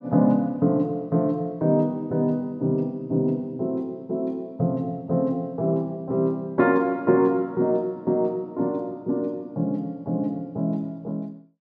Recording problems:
none

